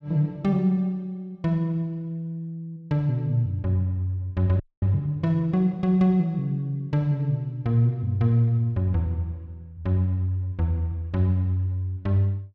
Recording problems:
frozen audio; at 4.5 s

